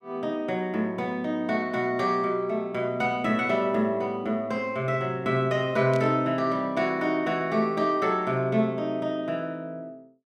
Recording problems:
burst of static; at 6 s; peak -13 dB vs average level

